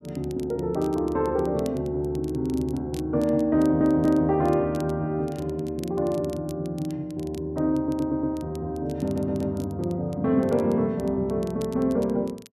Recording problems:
crackling; vinyl, SNR 25 dB
audio stuttering; at 3.5 s, at 8 s and at 9 s

